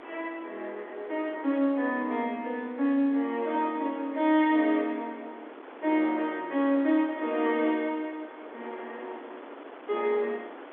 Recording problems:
phone line; 240 Hz to 3.7 kHz, G.711
wind on the microphone; below 1.2 kHz, SNR 18 dB

